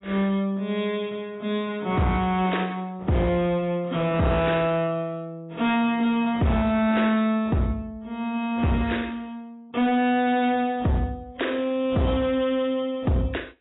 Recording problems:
lossy codec; AAC, log-spectral distance 3 dB, nothing above 3.8 kHz
distorted audio; hard clipping, signal-to-distortion ratio 10 dB

